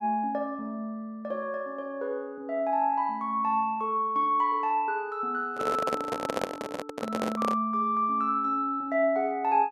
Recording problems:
microphone handling noise; from 5.5 to 7.5 s; peak +2 dB vs average level

